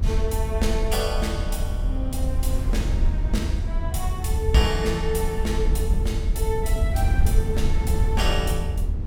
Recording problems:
hum; 60 Hz, harmonics up to 1.4 kHz, SNR 25 dB
rumble; below 78 Hz, SNR -3 dB
wind noise; below 640 Hz, SNR 16 dB

